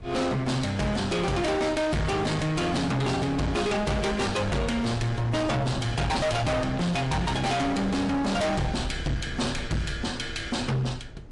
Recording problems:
lossy codec; MP3, log-spectral distance 2 dB, nothing above 11 kHz
distortion; hard clipping, signal-to-distortion ratio 6 dB
wind on the microphone; below 280 Hz, SNR 12 dB

